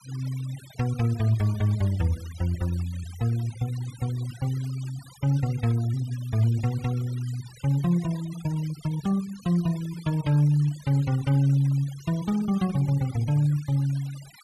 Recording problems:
denoising artefacts; signal-to-artefact ratio 20 dB

